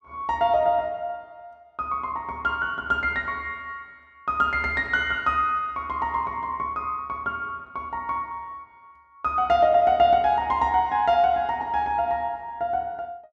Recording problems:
none

